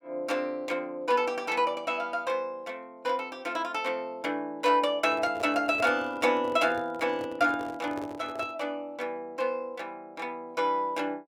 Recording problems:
handling noise; from 5 to 8.5 s; peak -6 dB vs average level

